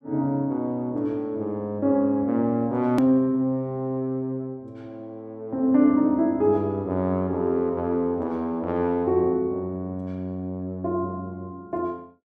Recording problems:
edit click; at 3 s

